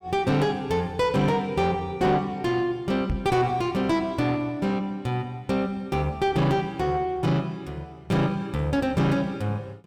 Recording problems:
distortion; soft clipping, signal-to-distortion ratio 9 dB
microphone thump; at 3 s; peak +1 dB vs average level

